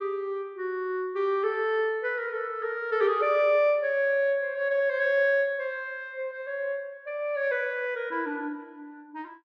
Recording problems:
none

